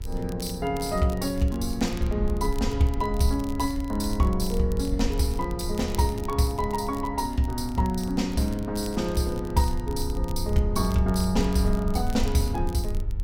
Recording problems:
hum; 50 Hz, harmonics up to 2.3 kHz, SNR 24 dB
low-frequency rumble; below 70 Hz, SNR 7 dB
crackle; vinyl, SNR 21 dB

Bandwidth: 16.5 kHz